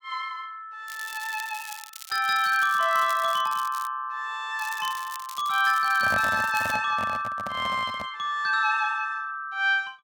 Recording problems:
crackle; from 1 to 4 s and from 4.5 to 7 s; loose cable, SNR 16 dB
handling noise; from 6 to 8 s; peak -2 dB vs average level

